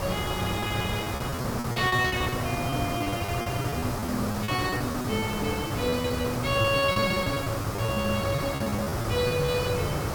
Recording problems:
hiss; SNR 2 dB
packet loss; 15% of the sound replaced, filled with repeated pitch periods

